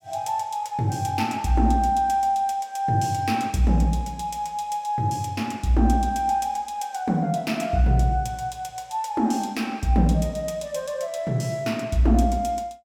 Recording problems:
none

